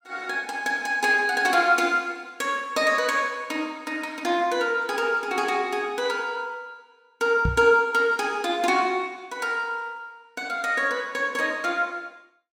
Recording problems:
microphone bump; at 7.5 s; peak +2 dB vs average level

